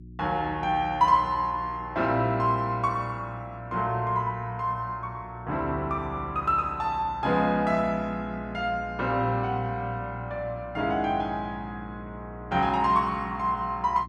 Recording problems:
hum; 60 Hz, harmonics up to 360 Hz, SNR 17 dB

